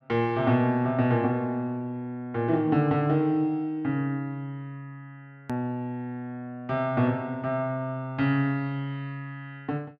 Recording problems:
click at an edit; at 5.5 s

